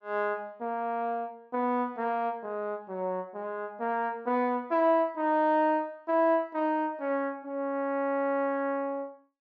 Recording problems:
treble cut off; nothing above 8 kHz

